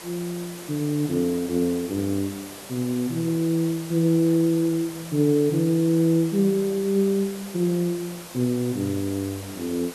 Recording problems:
hiss; slope -3 dB per octave, SNR 15 dB

